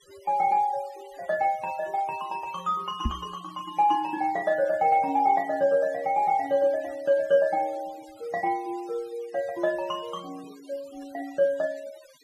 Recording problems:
noise reduction artefacts; signal-to-artefact ratio 24 dB
microphone thump; at 3 s; peak +2 dB vs average level

